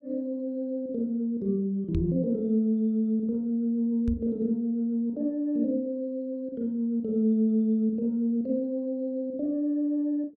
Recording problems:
microphone bump; at 2 s and at 4 s; peak 0 dB vs average level

